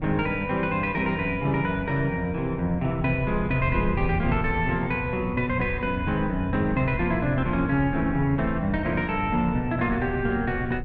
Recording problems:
wind on the microphone; below 130 Hz, SNR 10 dB

